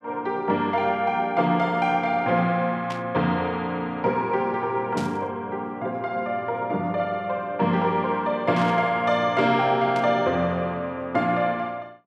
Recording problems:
burst of static; 4 times, first at 3 s; peak -8 dB vs average level

